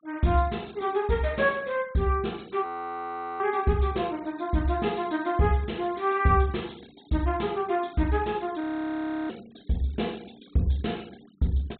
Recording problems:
treble missing; nothing above 4 kHz
denoising artefacts; signal-to-artefact ratio 26 dB
frozen audio; at 2.5 s for 1 s and at 8.5 s for 0.5 s

